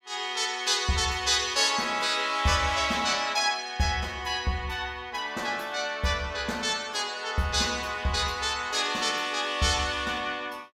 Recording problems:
none

